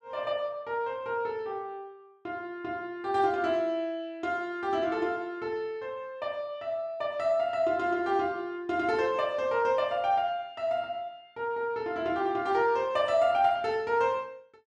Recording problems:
none

